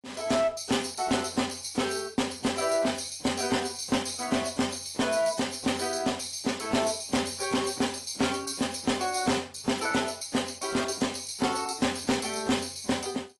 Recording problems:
codec artefacts; AAC, log-spectral distance 8 dB, nothing above 11.3 kHz
distortion; hard clipping, signal-to-distortion ratio 11 dB

